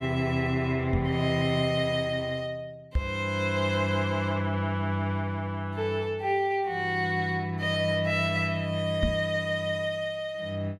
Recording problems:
microphone bump; at 1 s, at 3 s and at 9 s; peak +4 dB vs average level

